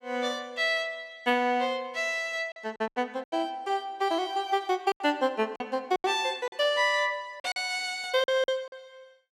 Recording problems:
packet loss; 8% of the sound replaced, filled with silence

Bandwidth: 16 kHz